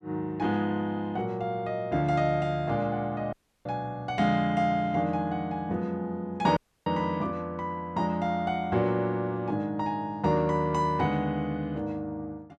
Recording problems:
audio cutting out; at 3.5 s and at 6.5 s

